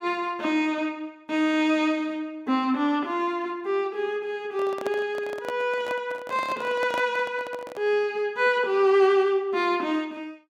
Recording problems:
handling noise; from 4.5 to 8 s; peak -4 dB vs average level

